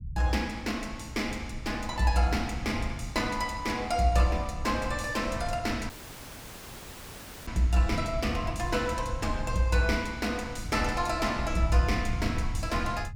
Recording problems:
low-frequency rumble; below 110 Hz, SNR 9 dB
dropout; at 6 s for 1.5 s

